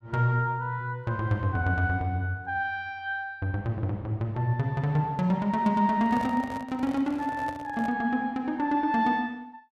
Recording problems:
microphone handling noise; from 6 to 8 s; peak -8 dB vs average level

